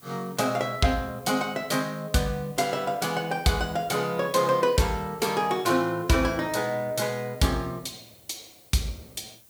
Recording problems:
hiss; SNR 24 dB

